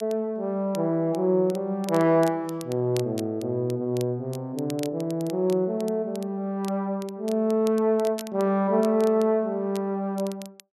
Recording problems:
crackling; vinyl, SNR 21 dB

